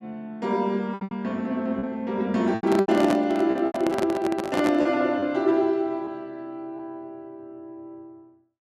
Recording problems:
packet loss; 7% of the sound replaced, filled with repeated pitch periods
handling noise; from 2.5 to 5 s; peak +1 dB vs average level

